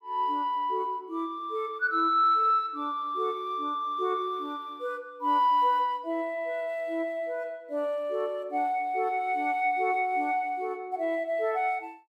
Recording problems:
none

